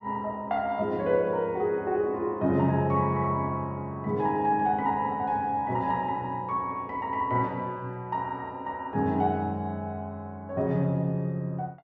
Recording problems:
none

